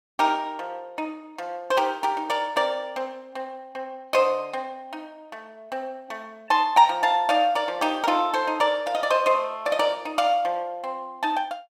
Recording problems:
none

